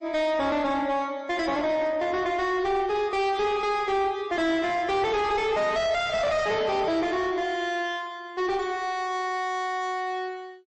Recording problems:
lossy codec; MP3, log-spectral distance 2 dB, nothing above 8.2 kHz
distortion; soft clipping, signal-to-distortion ratio 6 dB

